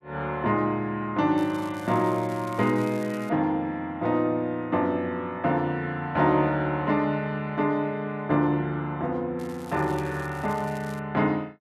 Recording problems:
crackling; from 1.5 to 3.5 s and from 9.5 to 11 s; loose cable, SNR 23 dB

